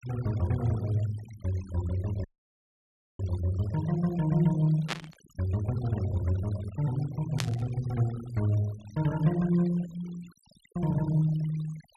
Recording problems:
noise reduction artefacts; signal-to-artefact ratio 20 dB
dropout; at 2 s for 1 s
static burst; at 5 s and at 7.5 s; peak +2 dB vs average level

